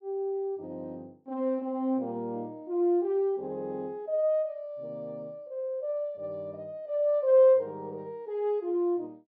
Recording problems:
none

